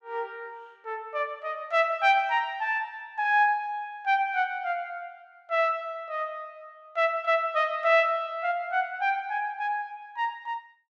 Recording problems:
none

